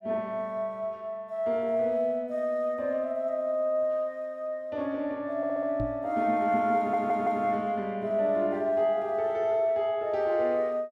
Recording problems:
stutter; at 5.5 s and at 7 s
microphone bump; at 6 s; peak -2 dB vs average level

